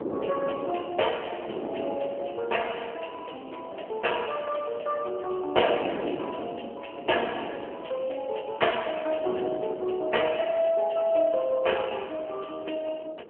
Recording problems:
phone line; 320 Hz to 3.1 kHz, AMR-NB
wind noise; below 550 Hz, SNR 10 dB

